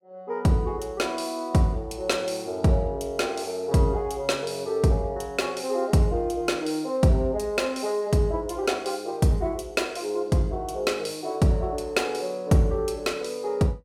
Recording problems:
none

